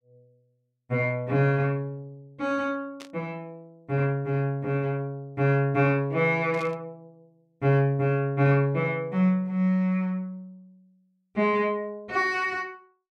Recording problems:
static burst; at 3 s and at 6.5 s; peak -13 dB vs average level

